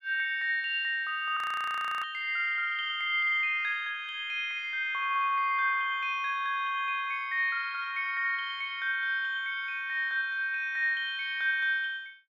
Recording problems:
audio freezing; at 1.5 s for 0.5 s

